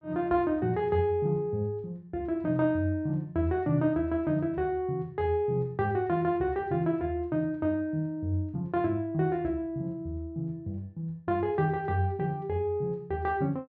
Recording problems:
treble missing; nothing above 7.3 kHz

